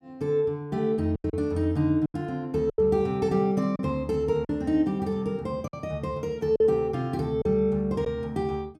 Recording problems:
packet loss; 5% of the sound replaced, filled with silence

